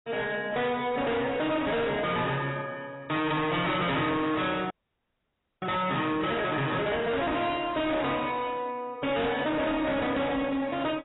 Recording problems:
codec artefacts; AAC, log-spectral distance 5 dB, nothing above 3.8 kHz
distortion; hard clipping, signal-to-distortion ratio 6 dB
frozen audio; at 4.5 s for 1 s

